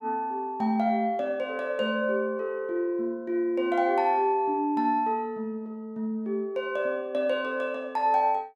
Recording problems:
none

